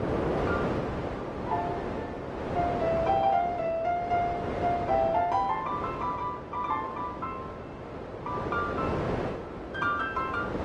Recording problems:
lossy compression; Opus, log-spectral distance 2 dB
wind on the microphone; below 790 Hz, SNR 4 dB

